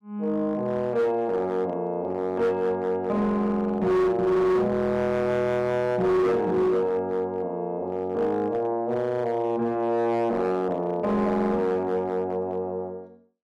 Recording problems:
distorted audio; hard clipping, signal-to-distortion ratio 10 dB

